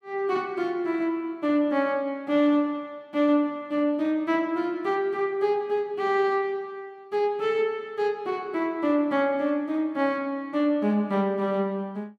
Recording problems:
none

